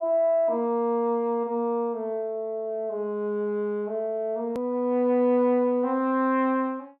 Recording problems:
hard cut with a click; at 4.5 s

